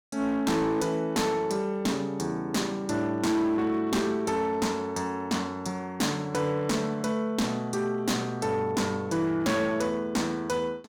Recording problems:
distortion; hard clipping, signal-to-distortion ratio 10 dB

